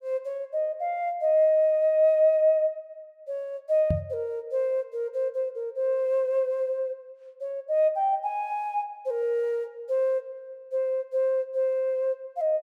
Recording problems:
knock on the microphone; at 4 s; peak +3 dB vs average level

